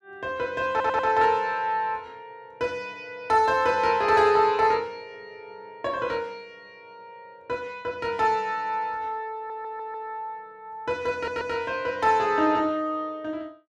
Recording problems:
audio stuttering; at 0.5 s, at 9.5 s and at 11 s

